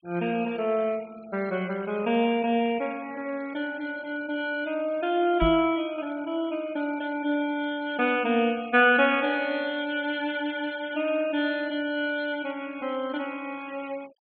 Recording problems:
treble missing; nothing above 4.6 kHz
noise reduction artefacts; signal-to-artefact ratio 23 dB
knock on the microphone; at 5.5 s; peak +2 dB vs average level

